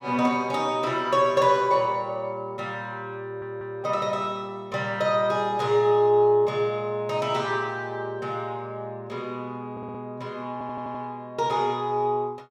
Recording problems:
stutter; at 3 s, at 9.5 s and at 11 s

